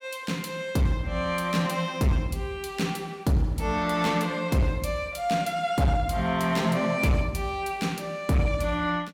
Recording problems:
distorted audio; hard clipping, signal-to-distortion ratio 12 dB

